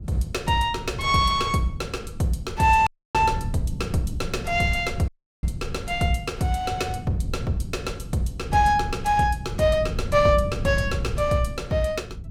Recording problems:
wind on the microphone; below 140 Hz, SNR 10 dB
audio cutting out; at 3 s and at 5 s

